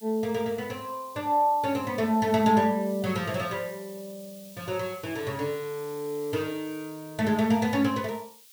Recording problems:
hiss; SNR 20 dB

